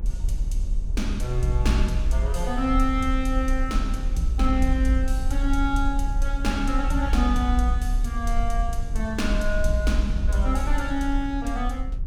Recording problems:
rumble; below 46 Hz, strongest tone 34 Hz, SNR 2 dB

